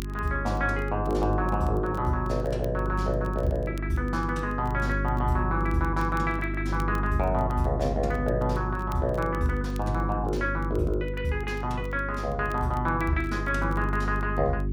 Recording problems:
hum; 50 Hz, harmonics up to 400 Hz, SNR 3 dB
crackle; vinyl, SNR 27 dB

